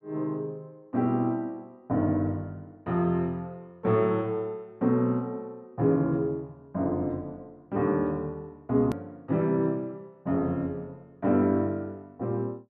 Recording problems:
treble missing; nothing above 8 kHz
click at an edit; at 9 s

